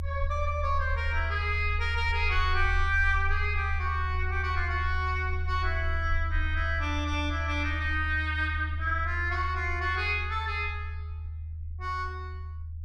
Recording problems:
low-frequency rumble; below 80 Hz, strongest tone 78 Hz, SNR 3 dB

